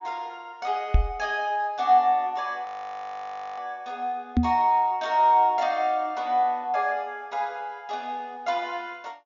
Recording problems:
treble cut off; nothing above 6.9 kHz
microphone bump; at 1 s and at 4.5 s; peak +8 dB vs average level
frozen audio; at 2.5 s for 1 s

